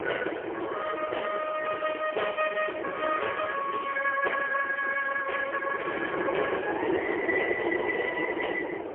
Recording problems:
phone line; 320 Hz to 2.6 kHz, AMR-NB, then MP3
wind noise; below 710 Hz, SNR 4 dB

